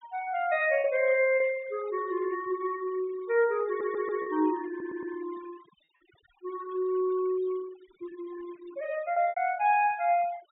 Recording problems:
treble missing; nothing above 4 kHz
denoising artefacts; signal-to-artefact ratio 21 dB
packet loss; 3% of the sound replaced, filled with repeated pitch periods
static burst; at 1.5 s; peak -24 dB vs average level
audio stuttering; at 3.5 s and at 4.5 s

